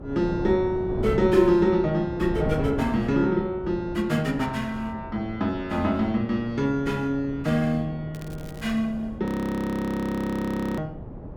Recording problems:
wind noise; below 340 Hz, SNR 11 dB
crackling; at 8 s; loose cable, SNR 26 dB
audio freezing; at 9.5 s for 1.5 s

